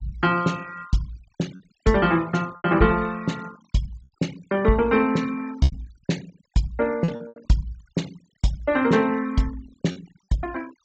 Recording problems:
treble missing; nothing above 8 kHz
denoising artefacts; signal-to-artefact ratio 21 dB
lost packets; 5% of the sound replaced, filled with repeated pitch periods

